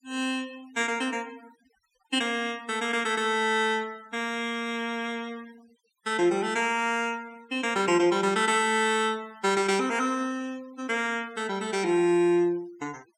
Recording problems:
noise reduction artefacts; signal-to-artefact ratio 25 dB

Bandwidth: 17 kHz